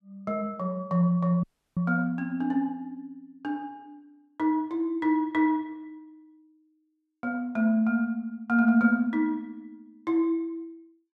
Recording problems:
audio cutting out; at 1.5 s

